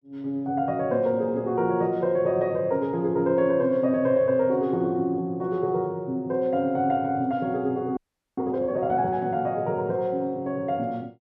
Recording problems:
audio freezing; at 8 s

